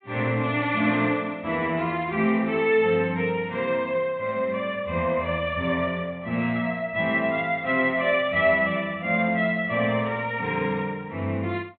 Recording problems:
low-pass filter; nothing above 4 kHz

